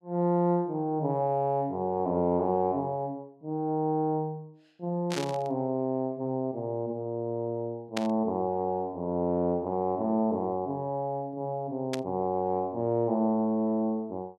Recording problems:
static burst; at 5 s, at 8 s and at 12 s; peak 0 dB vs average level

